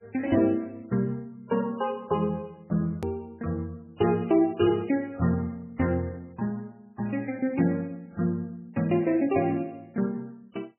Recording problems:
lossy codec; MP3, log-spectral distance 2 dB, nothing above 2.7 kHz
click at an edit; at 3 s

